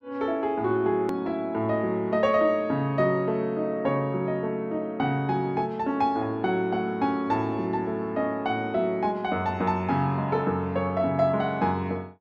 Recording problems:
click at an edit; at 1 s

